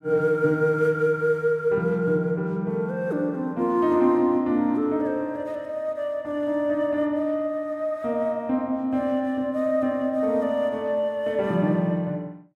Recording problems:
none

